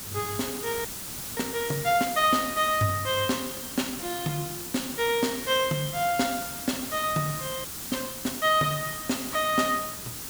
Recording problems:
hiss; SNR 7 dB
frozen audio; at 1 s for 0.5 s and at 7.5 s

